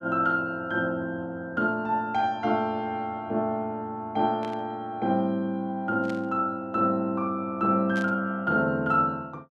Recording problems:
static burst; at 4.5 s, at 6 s and at 8 s; peak -11 dB vs average level

